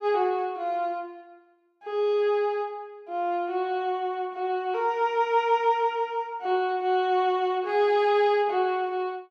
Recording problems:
none

